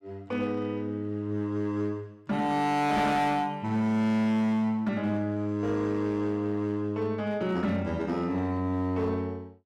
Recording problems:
distorted audio; hard clipping, signal-to-distortion ratio 11 dB

